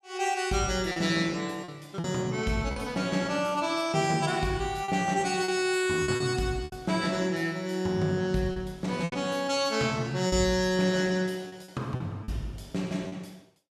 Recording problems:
lost packets; 6% of the sound replaced, filled with repeated pitch periods

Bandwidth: 14.5 kHz